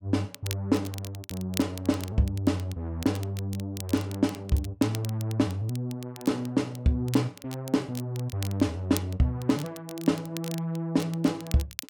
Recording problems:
crackle; vinyl, SNR 15 dB

